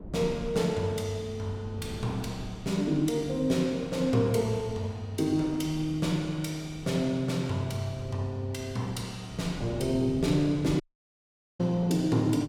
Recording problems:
wind on the microphone; below 280 Hz, SNR 16 dB
audio cutting out; at 11 s for 1 s

